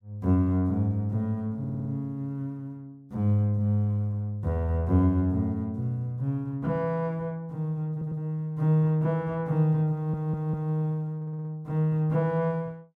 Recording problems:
stutter; 4 times, first at 1.5 s

